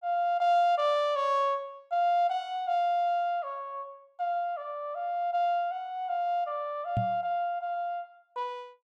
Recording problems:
microphone thump; at 7 s; peak +2 dB vs average level

